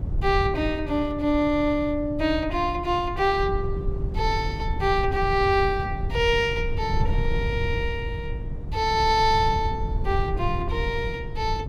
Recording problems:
wind on the microphone; below 110 Hz, SNR 6 dB

